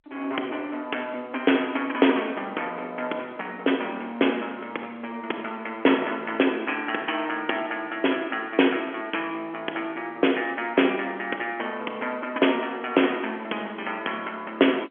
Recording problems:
telephone audio; 280 Hz to 3.5 kHz, G.711

